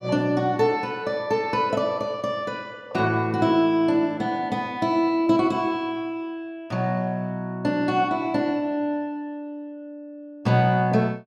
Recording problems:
none

